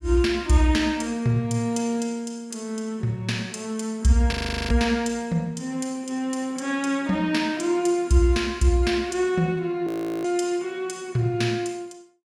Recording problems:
frozen audio; at 4.5 s and at 10 s

